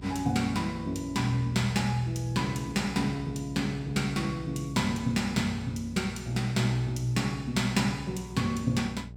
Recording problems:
electrical hum; 60 Hz, harmonics up to 600 Hz, SNR 15 dB

